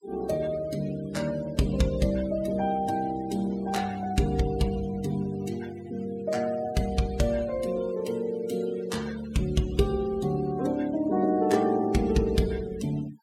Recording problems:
noise reduction artefacts; signal-to-artefact ratio 19 dB

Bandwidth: 16.5 kHz